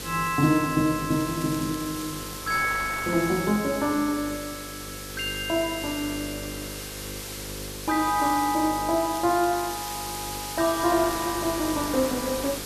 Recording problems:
hum; 50 Hz, harmonics up to 550 Hz, SNR 15 dB
hiss; SNR 9 dB
wind on the microphone; below 2 kHz, SNR 18 dB
crackling; from 1 to 2.5 s and from 8.5 to 12 s; loose cable, SNR 20 dB

